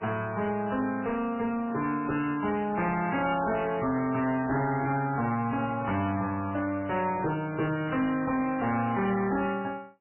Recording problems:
lossy codec; MP3, log-spectral distance 4 dB, nothing above 2.7 kHz
distorted audio; hard clipping, uneven, signal-to-distortion ratio 11 dB

